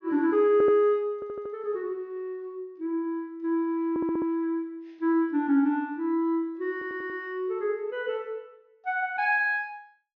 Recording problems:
treble cut off; nothing above 6.8 kHz
stutter; 4 times, first at 0.5 s

